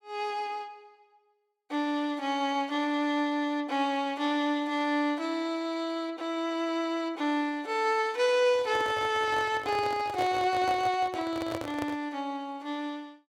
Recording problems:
handling noise; from 8.5 to 12 s; peak -2 dB vs average level

